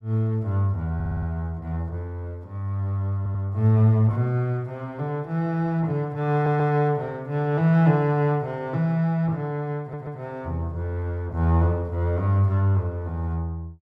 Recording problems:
audio stuttering; 4 times, first at 1 s

